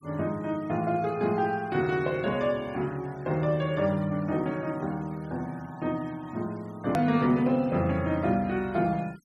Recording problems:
noise reduction artefacts; signal-to-artefact ratio 26 dB
hard cut with a click; at 7 s

